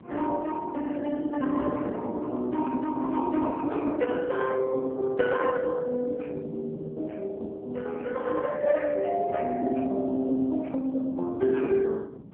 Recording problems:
phone line; 220 Hz to 3 kHz, AMR-NB
wind on the microphone; below 350 Hz, SNR 17 dB

